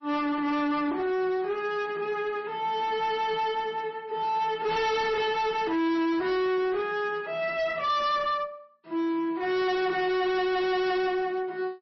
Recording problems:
lossy compression; MP3, then MP3, log-spectral distance 2 dB, nothing above 5.8 kHz
distorted audio; hard clipping, signal-to-distortion ratio 6 dB

